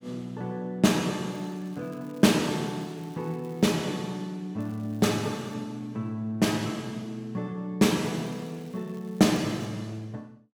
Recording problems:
crackling; from 1.5 to 3.5 s, at 4.5 s and from 8 to 9.5 s; loose cable, SNR 30 dB

